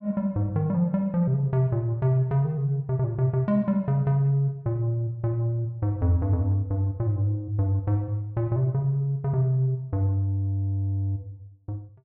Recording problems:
none

